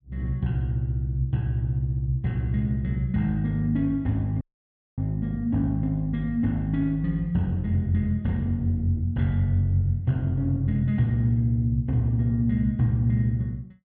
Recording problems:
audio cutting out; at 4.5 s for 0.5 s

